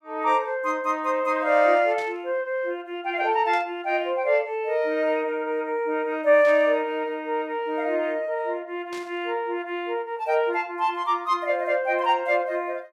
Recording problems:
static burst; 4 times, first at 2 s; peak -13 dB vs average level

